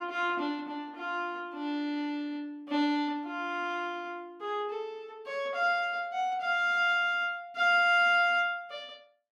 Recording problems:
none

